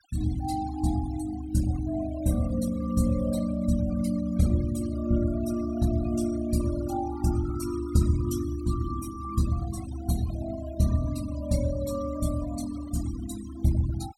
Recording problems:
noise reduction artefacts; signal-to-artefact ratio 16 dB

